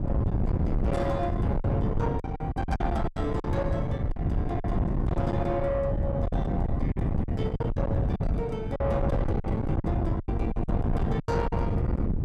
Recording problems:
distortion; soft clipping, signal-to-distortion ratio 7 dB
wind on the microphone; below 200 Hz, SNR -3 dB
packet loss; 9% of the sound replaced, filled with silence

